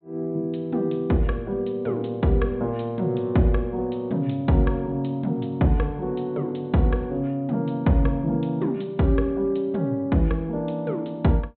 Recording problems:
low-pass filter; nothing above 4 kHz

